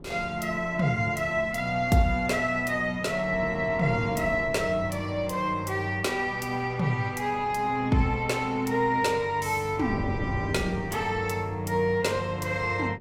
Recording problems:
wind noise; below 320 Hz, SNR 14 dB

